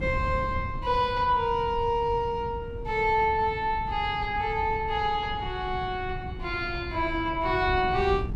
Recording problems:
wind noise; below 130 Hz, SNR 11 dB

